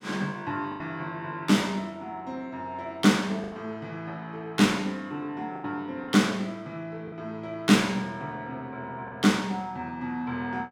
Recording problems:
lost packets; 3% of the sound replaced, filled with the last packet

